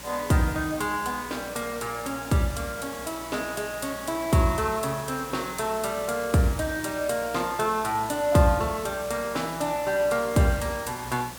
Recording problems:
hum; 60 Hz, harmonics up to 540 Hz, SNR 22 dB
hiss; slope -2 dB per octave, SNR 13 dB

